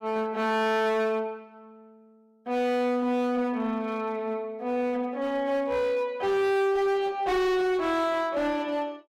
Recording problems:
distortion; hard clipping, signal-to-distortion ratio 7 dB

